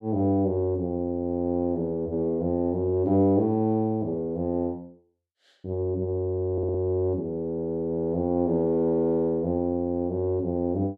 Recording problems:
stutter; at 6.5 s

